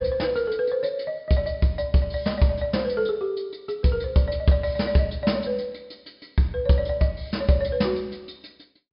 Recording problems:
treble missing; nothing above 5.5 kHz

